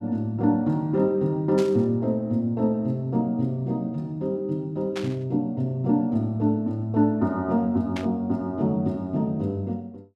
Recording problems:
static burst; at 1.5 s, at 5 s and at 8 s; peak -6 dB vs average level

